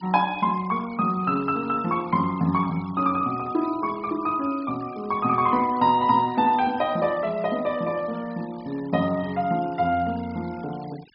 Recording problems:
treble cut off; nothing above 5.5 kHz
denoising artefacts; signal-to-artefact ratio 22 dB

